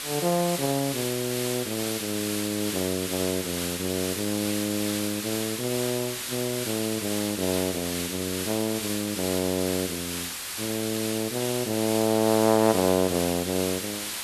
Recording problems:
background hiss; slope +1 dB per octave, SNR 3 dB

